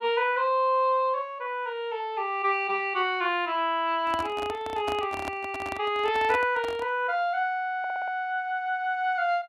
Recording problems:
microphone handling noise; from 4 to 7 s; peak -3 dB vs average level
stutter; at 8 s

